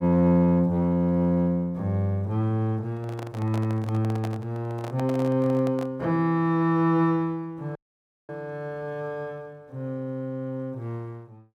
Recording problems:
microphone handling noise; from 3 to 6 s; peak -7 dB vs average level
audio cutting out; at 8 s for 0.5 s

